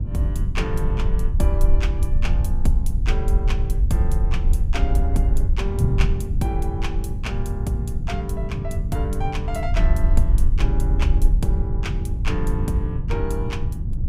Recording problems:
low-frequency rumble; below 52 Hz, SNR -3 dB
wind on the microphone; below 110 Hz, SNR -2 dB

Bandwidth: 15.5 kHz